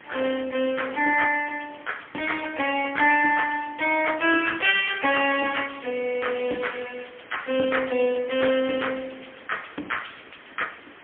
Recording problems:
telephone audio; 220 Hz to 3.4 kHz, AMR-NB, then MP3
hiss; SNR 22 dB

